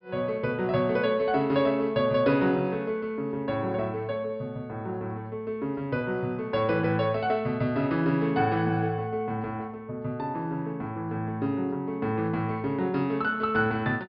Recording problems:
low-pass filter; nothing above 5.5 kHz

